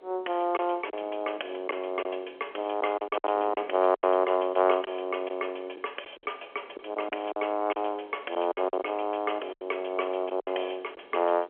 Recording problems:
phone line; 320 Hz to 3.3 kHz, G.711
wind noise; below 570 Hz, SNR 22 dB
packet loss; 8% of the sound replaced, filled with silence

